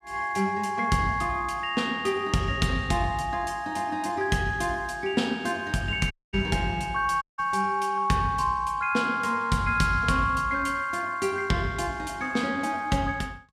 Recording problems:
dropout; at 6 s and at 7 s

